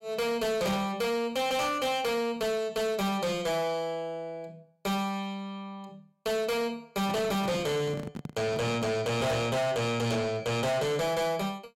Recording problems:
distortion; soft clipping, signal-to-distortion ratio 8 dB
microphone handling noise; from 7 to 9.5 s; peak -3 dB vs average level

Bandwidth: 16 kHz